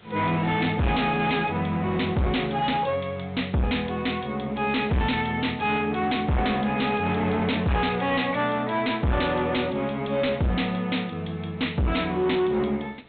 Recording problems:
treble cut off; nothing above 4 kHz
distorted audio; hard clipping, uneven, signal-to-distortion ratio 6 dB
hiss; SNR 27 dB

